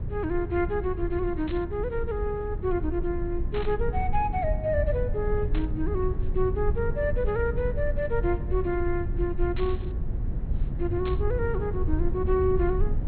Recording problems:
treble cut off; nothing above 4.3 kHz
low-frequency rumble; below 88 Hz, SNR 2 dB
static burst; 5 times, first at 1.5 s; peak -7 dB vs average level

